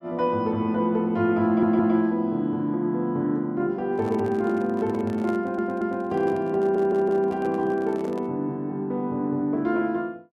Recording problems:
audio stuttering; at 1.5 s, at 5.5 s and at 6.5 s
handling noise; from 4 to 8.5 s; peak -10 dB vs average level

